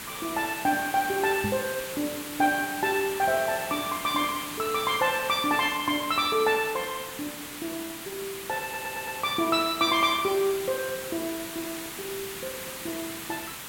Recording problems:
hiss; SNR 9 dB
knock on the microphone; at 1.5 s; peak 0 dB vs average level
audio stuttering; at 8.5 s

